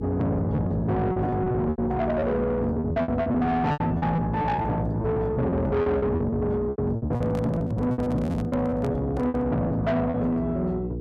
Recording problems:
distorted audio; soft clipping, signal-to-distortion ratio 10 dB
electrical hum; 60 Hz, harmonics up to 480 Hz, SNR 8 dB
lost packets; 14% of the sound replaced, filled with repeated pitch periods
handling noise; from 7 to 9.5 s; peak -8 dB vs average level

